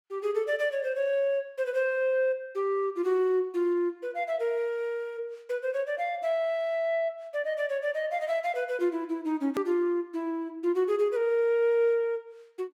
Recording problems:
hard cut with a click; at 9.5 s

